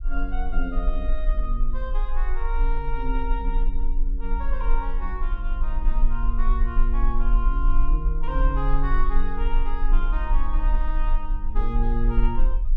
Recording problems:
rumble; below 36 Hz, strongest tone 18 Hz, SNR -6 dB

